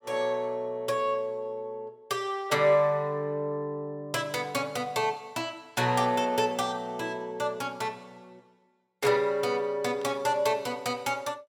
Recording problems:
static burst; at 10 s; peak -16 dB vs average level

